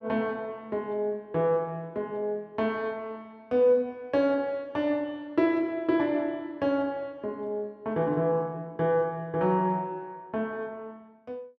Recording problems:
none

